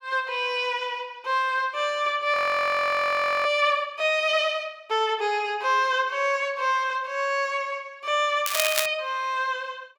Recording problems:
frozen audio; at 2.5 s for 1 s
crackling; at 8.5 s; loose cable, SNR 3 dB

